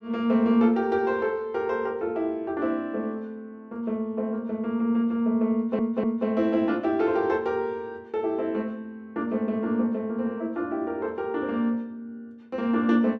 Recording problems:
audio stuttering; at 5.5 s

